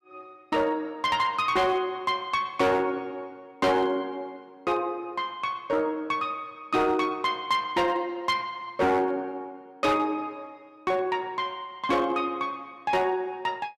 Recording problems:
distortion; hard clipping, signal-to-distortion ratio 12 dB

